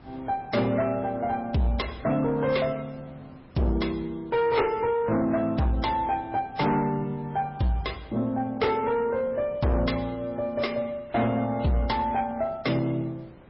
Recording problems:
lossy compression; AAC, then MP3, log-spectral distance 3 dB, nothing above 5.3 kHz
distorted audio; soft clipping, signal-to-distortion ratio 10 dB
background hiss; SNR 23 dB

